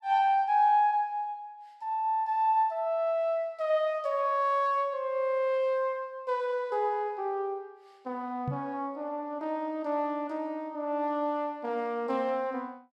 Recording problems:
microphone bump; at 8.5 s; peak 0 dB vs average level

